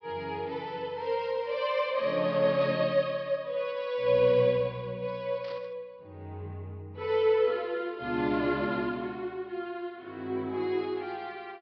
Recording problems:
low-pass filter; nothing above 5.5 kHz
burst of static; at 2.5 s and at 5.5 s; peak -12 dB vs average level

